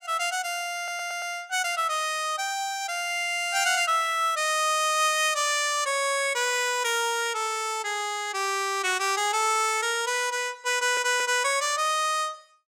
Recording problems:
stutter; at 1 s and at 11 s

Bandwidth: 16.5 kHz